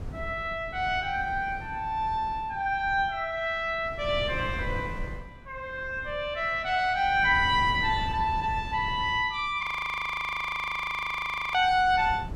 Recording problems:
wind noise; below 180 Hz, SNR 13 dB
frozen audio; at 9.5 s for 2 s

